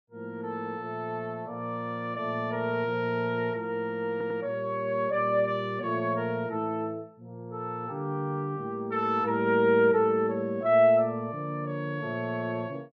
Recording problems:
stutter; at 4 s

